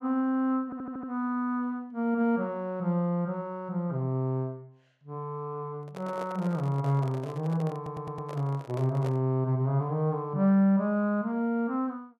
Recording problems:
stutter; at 0.5 s and at 8 s
handling noise; from 6 to 9 s; peak -7 dB vs average level

